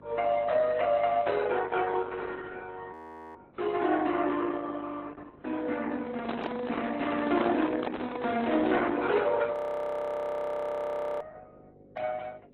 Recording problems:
lossy codec; Opus, then AAC, log-spectral distance 4 dB, nothing above 13.1 kHz
hum; 50 Hz, harmonics up to 600 Hz, SNR 25 dB
frozen audio; at 3 s and at 9.5 s for 1.5 s
microphone handling noise; from 6 to 9 s; peak +2 dB vs average level

